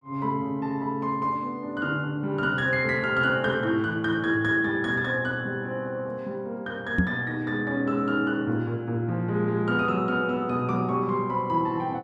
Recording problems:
microphone bump; at 7 s; peak +7 dB vs average level

